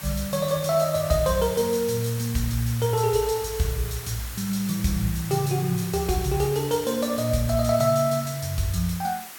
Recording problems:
hiss; SNR 12 dB

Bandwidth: 17 kHz